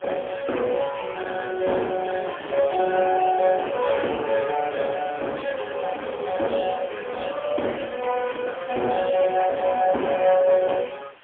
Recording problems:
telephone audio; 260 Hz to 3.3 kHz, AMR-NB, then MP3
distorted audio; hard clipping, uneven, signal-to-distortion ratio 11 dB
background hiss; SNR 25 dB

